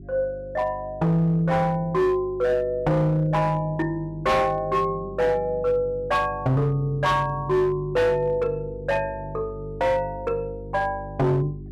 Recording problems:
distorted audio; hard clipping, signal-to-distortion ratio 11 dB
hum; 50 Hz, harmonics up to 400 Hz, SNR 16 dB

